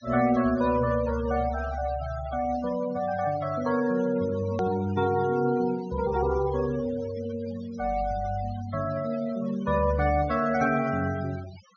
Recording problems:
low-pass filter; nothing above 6.7 kHz
denoising artefacts; signal-to-artefact ratio 17 dB
click at an edit; at 4.5 s

